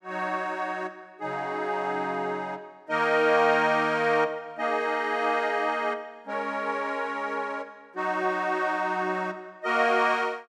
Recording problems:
none

